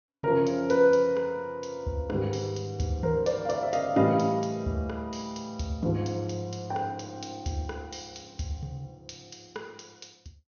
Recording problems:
treble cut off; nothing above 6.5 kHz

